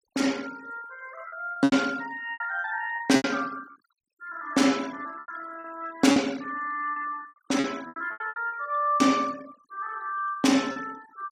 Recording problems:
noise reduction artefacts; signal-to-artefact ratio 20 dB
packet loss; 11% of the sound replaced, filled with repeated pitch periods

